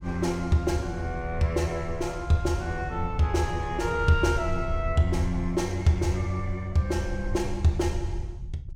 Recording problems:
rumble; below 84 Hz, SNR 10 dB

